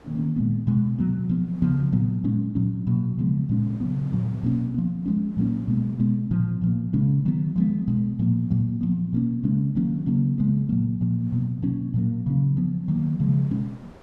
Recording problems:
wind noise; below 810 Hz, SNR 30 dB

